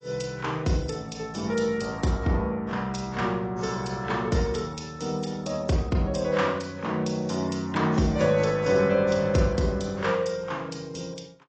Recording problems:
codec artefacts; AAC, log-spectral distance 4 dB, nothing above 7.8 kHz

